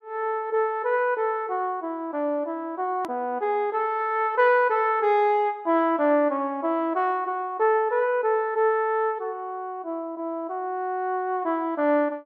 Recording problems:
hard cut with a click; at 3 s

